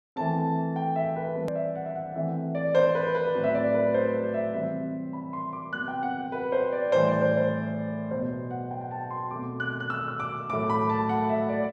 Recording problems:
edit click; at 1.5 s

